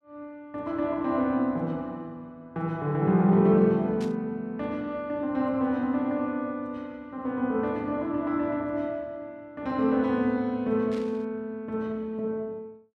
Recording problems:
static burst; at 4 s and at 11 s; peak -13 dB vs average level

